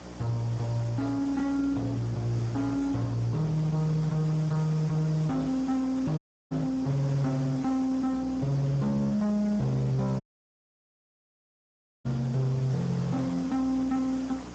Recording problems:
codec artefacts; Speex, log-spectral distance 4 dB
distortion; hard clipping, signal-to-distortion ratio 11 dB
hum; 60 Hz, harmonics up to 720 Hz, SNR 15 dB
background hiss; slope -5 dB per octave, SNR 17 dB
audio cutting out; at 6 s and at 10 s for 2 s

